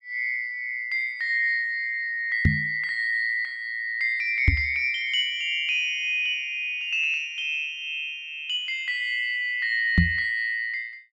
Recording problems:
microphone thump; at 2.5 s, at 4.5 s and at 10 s; peak +8 dB vs average level

